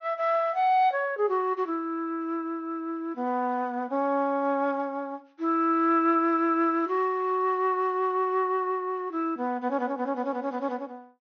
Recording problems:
treble cut off; nothing above 6.5 kHz

